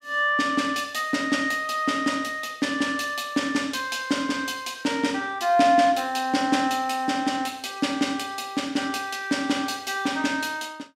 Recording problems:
none

